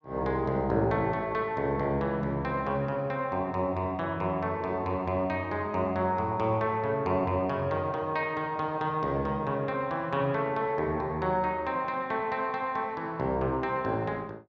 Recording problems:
none

